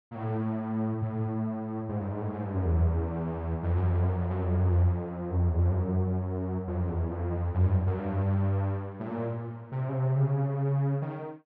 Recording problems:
none

